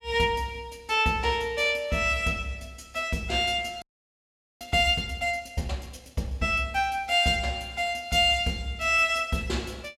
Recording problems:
frozen audio; at 4 s for 1 s

